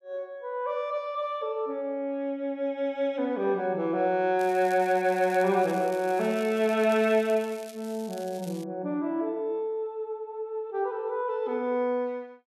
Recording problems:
crackle; from 4.5 to 8.5 s; loose cable, SNR 20 dB

